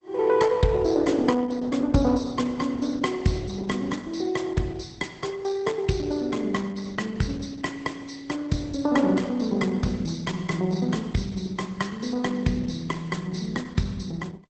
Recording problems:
lossy compression; Opus, log-spectral distance 4 dB, nothing above 8 kHz

